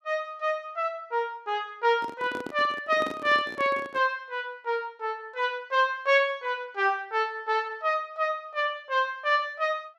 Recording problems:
handling noise; from 2 to 4 s; peak -5 dB vs average level

